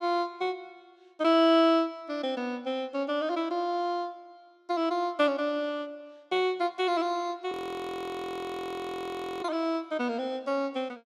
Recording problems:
audio freezing; at 7.5 s for 2 s

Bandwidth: 13.5 kHz